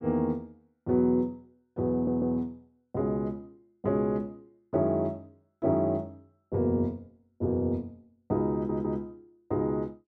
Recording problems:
stutter; at 2 s and at 8.5 s

